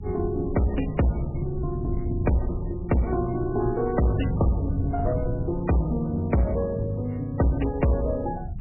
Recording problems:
lossy compression; MP3, log-spectral distance 2 dB, nothing above 2.9 kHz
distorted audio; soft clipping, signal-to-distortion ratio 12 dB
rumble; below 120 Hz, SNR 9 dB

